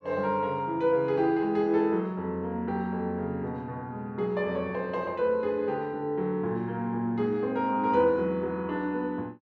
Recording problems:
none

